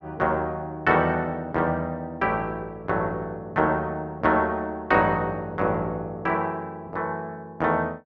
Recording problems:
none

